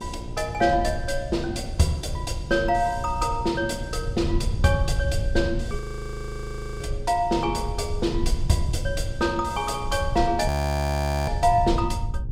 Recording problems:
hum; 60 Hz, harmonics up to 960 Hz, SNR 19 dB
rumble; below 100 Hz, SNR 6 dB
audio freezing; at 6 s for 1 s and at 10 s for 1 s

